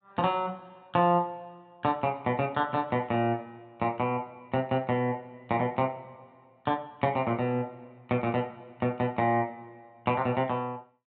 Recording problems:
treble cut off; nothing above 4 kHz

